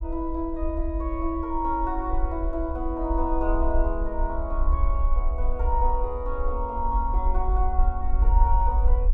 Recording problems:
low-frequency rumble; below 54 Hz, SNR -1 dB

